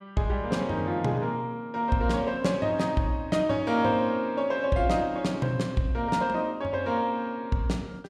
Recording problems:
none

